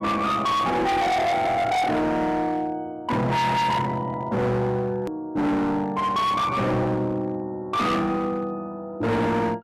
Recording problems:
distorted audio; hard clipping, signal-to-distortion ratio 6 dB
click at an edit; at 5 s

